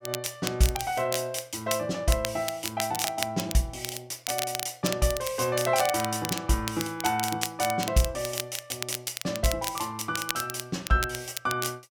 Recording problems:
crackle; vinyl, SNR 6 dB

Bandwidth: 17 kHz